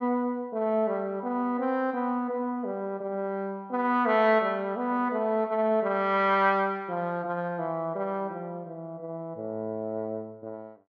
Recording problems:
none

